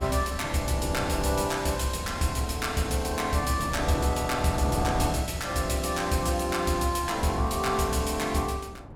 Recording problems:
wind on the microphone; below 430 Hz, SNR 10 dB

